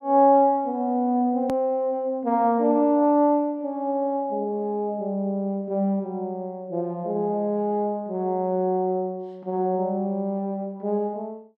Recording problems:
click at an edit; at 1.5 s

